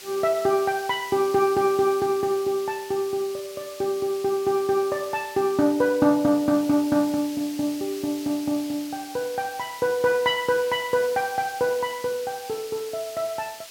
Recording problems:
background hiss; slope +2 dB per octave, SNR 16 dB

